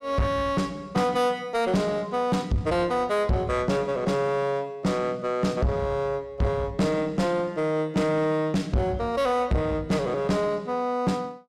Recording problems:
distorted audio; soft clipping, signal-to-distortion ratio 7 dB

